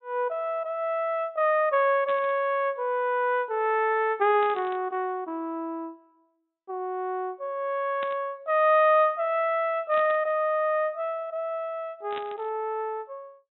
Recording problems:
low-pass filter; nothing above 3.9 kHz
burst of static; 5 times, first at 2 s; peak -9 dB vs average level

